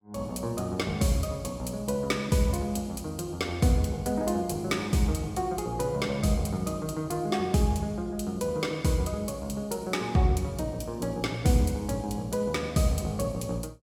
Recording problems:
none

